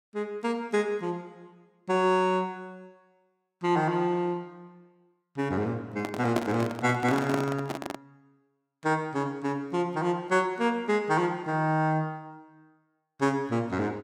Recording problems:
microphone handling noise; from 6 to 8 s; peak +3 dB vs average level

